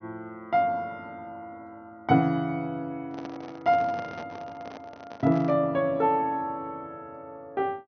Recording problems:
low-pass filter; nothing above 6.2 kHz
microphone handling noise; from 3 to 5.5 s; peak -10 dB vs average level

